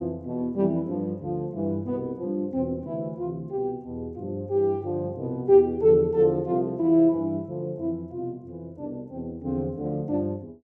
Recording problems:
none

